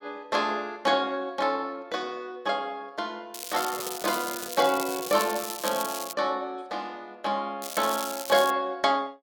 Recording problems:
crackle; from 3.5 to 6 s and at 7.5 s; loose cable, SNR 7 dB
handling noise; from 3.5 to 6 s; peak -10 dB vs average level

